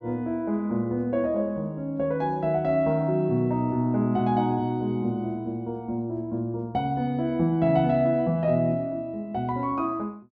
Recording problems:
none

